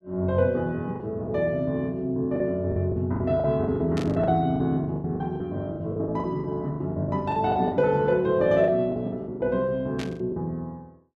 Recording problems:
packet loss; 13% of the sound replaced, filled with the last packet
static burst; at 4 s and at 10 s; peak -7 dB vs average level

